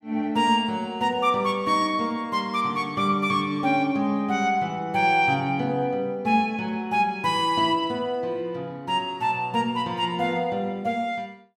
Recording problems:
none

